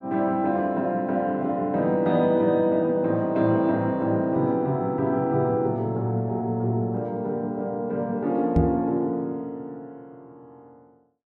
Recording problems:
microphone thump; at 8.5 s; peak +5 dB vs average level

